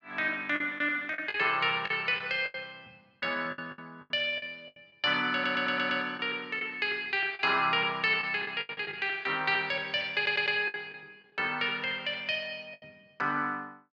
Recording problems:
packet loss; 9% of the sound replaced, filled with the last packet
stutter; at 5.5 s and at 10 s

